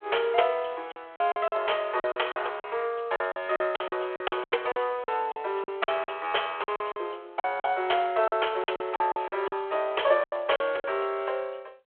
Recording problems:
phone line; 340 Hz to 3.4 kHz, G.726
packet loss; 13% of the sound replaced, filled with silence

